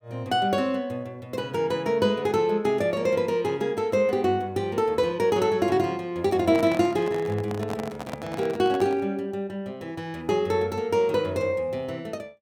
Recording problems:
microphone handling noise; from 6.5 to 9 s; peak -5 dB vs average level

